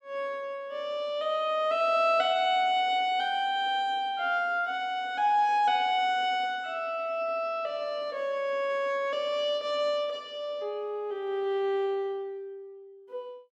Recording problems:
none

